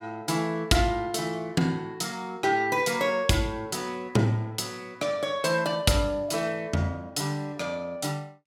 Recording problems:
none

